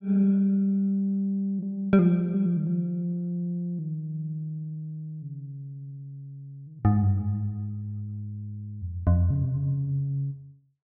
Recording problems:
none

